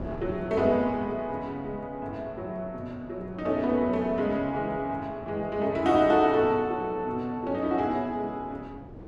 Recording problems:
wind on the microphone; below 410 Hz, SNR 19 dB

